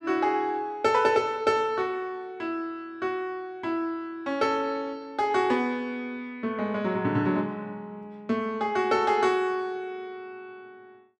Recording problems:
none

